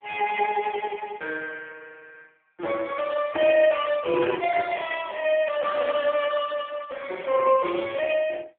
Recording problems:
phone line; 260 Hz to 3.3 kHz, AMR-NB

